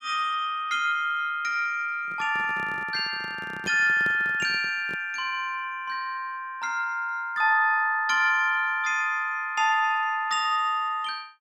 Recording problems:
microphone handling noise; from 2 to 5 s; peak -7 dB vs average level

